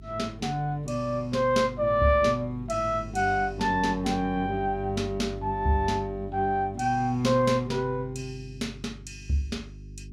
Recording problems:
hum; 50 Hz, harmonics up to 400 Hz, SNR 16 dB

